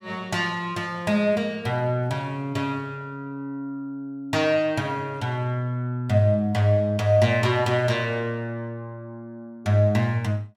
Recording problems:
none

